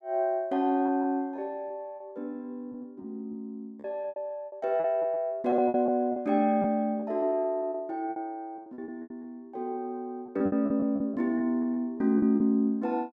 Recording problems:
lost packets; 12% of the sound replaced, filled with repeated pitch periods

